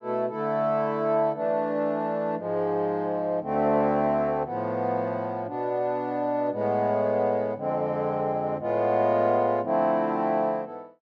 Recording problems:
none

